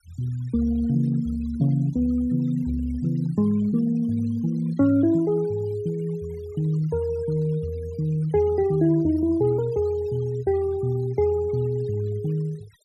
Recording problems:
denoising artefacts; signal-to-artefact ratio 25 dB

